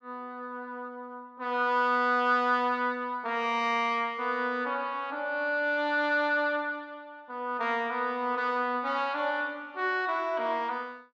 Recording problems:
none

